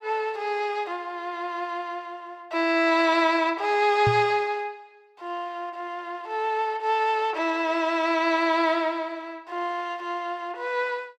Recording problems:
knock on the microphone; at 4 s; peak +2 dB vs average level

